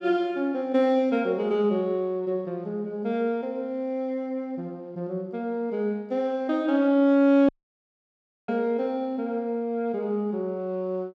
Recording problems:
dropout; at 7.5 s for 1 s

